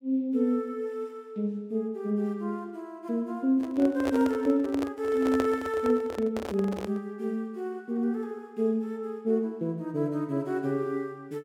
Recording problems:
microphone handling noise; from 3.5 to 7 s; peak +1 dB vs average level

